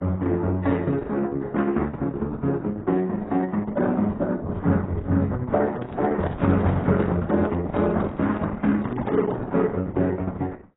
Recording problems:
lossy codec; Opus, then AAC, log-spectral distance 3 dB, nothing above 3.8 kHz
handling noise; from 5.5 to 9.5 s; peak -3 dB vs average level

